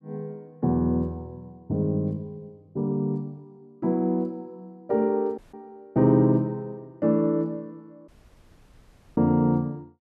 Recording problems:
audio cutting out; at 5.5 s and at 8 s for 1 s

